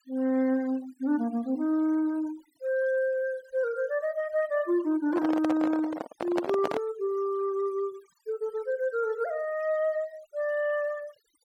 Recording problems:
noise reduction artefacts; signal-to-artefact ratio 22 dB
microphone handling noise; from 5 to 7 s; peak +2 dB vs average level

